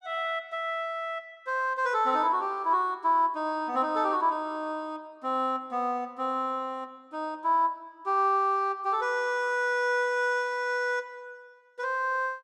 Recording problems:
none

